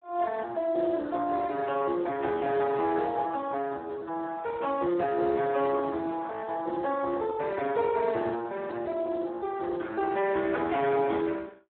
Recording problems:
telephone audio; 260 Hz to 4 kHz, Speex

